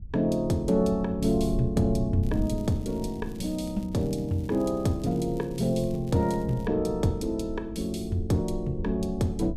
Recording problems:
wind noise; below 92 Hz, SNR 11 dB
crackle; from 2 to 6.5 s; loose cable, SNR 28 dB

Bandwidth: 14.5 kHz